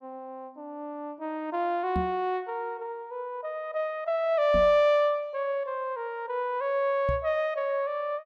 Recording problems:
knock on the microphone; at 2 s, at 4.5 s and at 7 s; peak 0 dB vs average level

